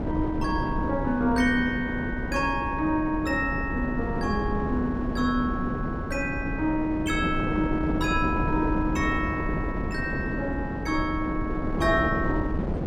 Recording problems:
wind noise; below 350 Hz, SNR 3 dB

